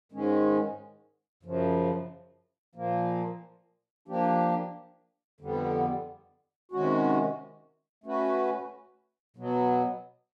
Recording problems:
none

